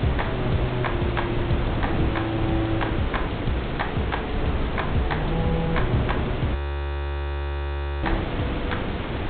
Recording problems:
low-pass filter; nothing above 4 kHz
hiss; SNR 4 dB
wind noise; below 320 Hz, SNR 1 dB
frozen audio; at 6.5 s for 1.5 s

